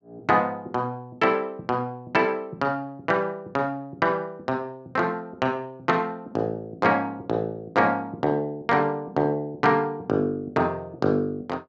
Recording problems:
none

